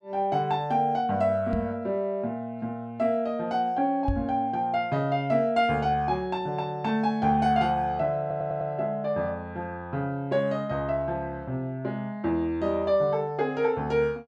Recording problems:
microphone bump; at 1.5 s and at 4 s; peak +1 dB vs average level
audio stuttering; at 8 s

